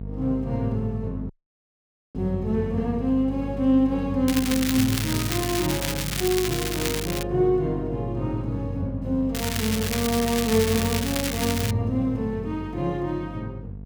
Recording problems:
hum; 50 Hz, harmonics up to 500 Hz, SNR 9 dB
dropout; at 1.5 s for 1 s
crackling; from 4.5 to 7 s and from 9.5 to 12 s; loose cable, SNR 4 dB

